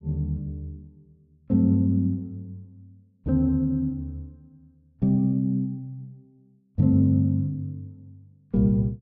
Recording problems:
none

